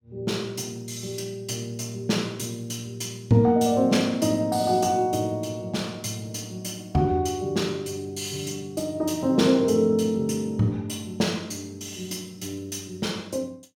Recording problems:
none

